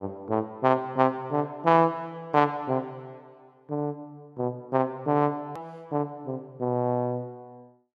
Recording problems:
click at an edit; at 5.5 s

